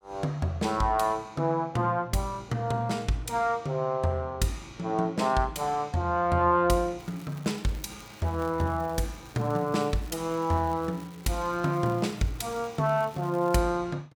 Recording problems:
crackling; from 7 to 14 s; loose cable, SNR 24 dB

